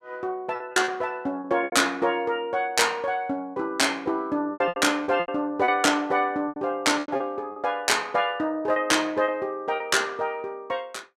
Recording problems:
packet loss; 9% of the sound replaced, filled with repeated pitch periods

